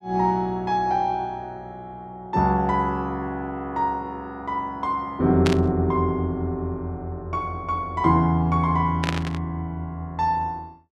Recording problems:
static burst; at 5.5 s and at 9 s; peak +2 dB vs average level

